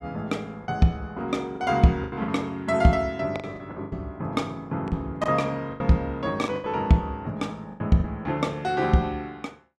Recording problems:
lost packets; 9% of the sound replaced, filled with the last packet

